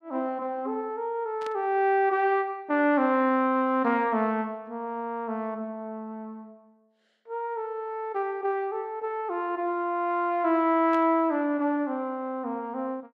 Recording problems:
burst of static; at 1.5 s and at 11 s; peak -12 dB vs average level

